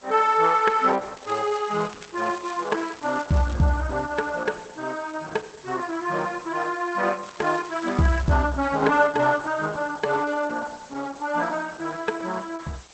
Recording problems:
codec artefacts; Opus, log-spectral distance 9 dB, nothing above 8 kHz
hiss; slope -1 dB per octave, SNR 24 dB
crackle; from 1 to 3.5 s and from 7 to 8.5 s; loose cable, SNR 21 dB

